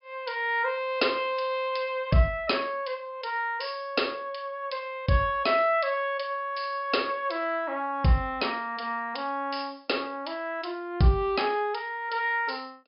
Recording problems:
treble missing; nothing above 5.5 kHz

